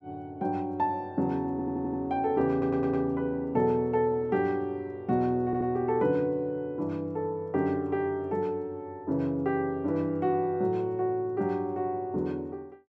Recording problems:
audio stuttering; at 1.5 s, at 2.5 s and at 5.5 s

